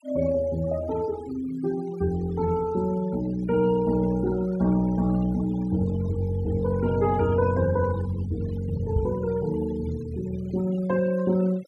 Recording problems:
noise reduction artefacts; signal-to-artefact ratio 19 dB
microphone thump; at 9 s; peak +4 dB vs average level

